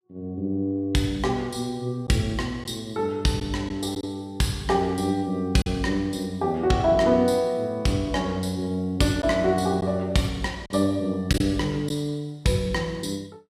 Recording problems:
lost packets; 1.6% of the sound replaced, filled with silence

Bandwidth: 14.5 kHz